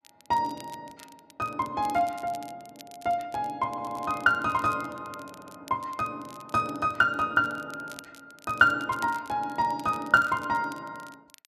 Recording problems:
crackling; vinyl, SNR 24 dB
audio stuttering; at 3.5 s and at 5.5 s

